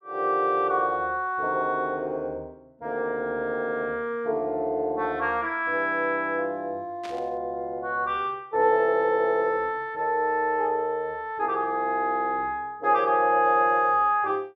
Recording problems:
burst of static; at 7 s; peak -12 dB vs average level

